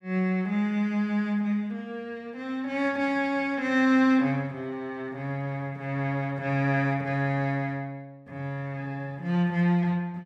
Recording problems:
none

